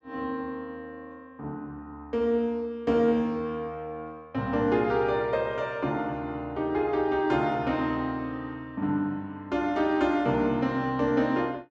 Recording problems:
none

